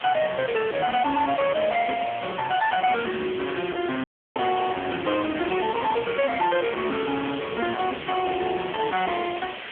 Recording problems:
telephone audio; 240 Hz to 3.3 kHz, AMR-NB
distorted audio; hard clipping, signal-to-distortion ratio 9 dB
hiss; SNR 12 dB
audio cutting out; at 4 s

